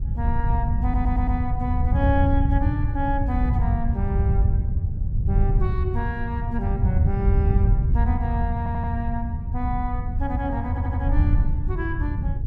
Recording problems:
wind on the microphone; below 100 Hz, SNR -6 dB
audio stuttering; at 1 s, at 8.5 s and at 11 s

